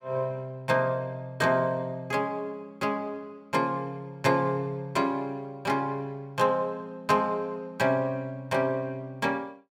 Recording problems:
none

